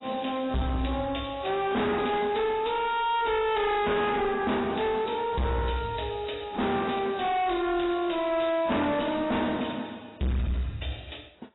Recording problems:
lossy codec; AAC, log-spectral distance 8 dB, nothing above 3.9 kHz
distortion; hard clipping, signal-to-distortion ratio 6 dB

